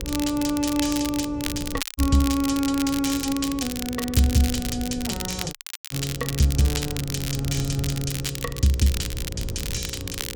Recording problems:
electrical hum; 60 Hz, harmonics up to 540 Hz, SNR 14 dB
wind noise; below 130 Hz, SNR 12 dB
crackling; vinyl, SNR 7 dB
dropout; at 2 s and at 5.5 s

